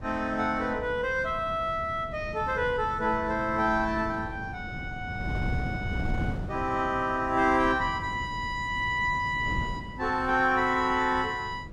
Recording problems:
wind on the microphone; below 220 Hz, SNR 10 dB

